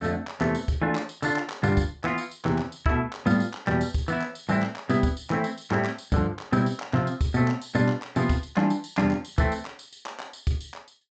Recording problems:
low-pass filter; nothing above 8 kHz

